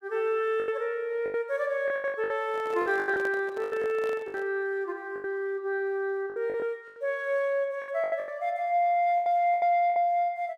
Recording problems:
lost packets; 13% of the sound replaced, filled with the last packet
handling noise; from 2.5 to 4.5 s; peak -7 dB vs average level

